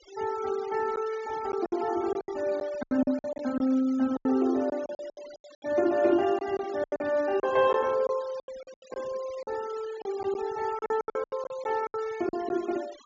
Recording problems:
treble missing; nothing above 7.3 kHz
denoising artefacts; signal-to-artefact ratio 20 dB
packet loss; 13% of the sound replaced, filled with silence

